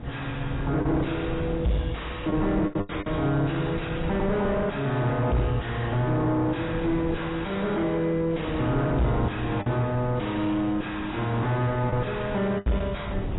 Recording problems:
codec artefacts; AAC, log-spectral distance 4 dB, nothing above 3.8 kHz
distorted audio; soft clipping, signal-to-distortion ratio 6 dB
wind noise; below 300 Hz, SNR 8 dB
lost packets; 3% of the sound replaced, filled with the last packet

